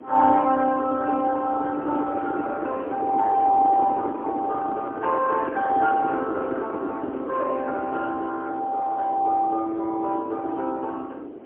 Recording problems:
phone line; 240 Hz to 2.1 kHz, AMR-NB, then MP3
wind on the microphone; below 470 Hz, SNR 10 dB

